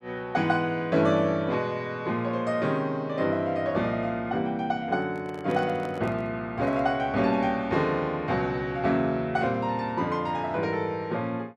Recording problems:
handling noise; from 5 to 7 s; peak -9 dB vs average level

